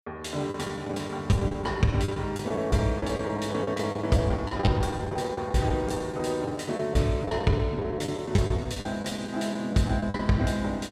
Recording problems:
packet loss; 13% of the sound replaced, filled with the last packet

